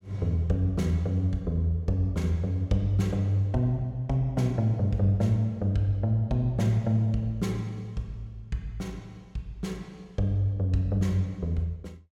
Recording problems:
none

